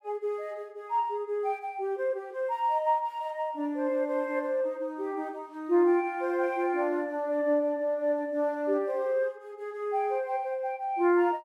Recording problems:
none

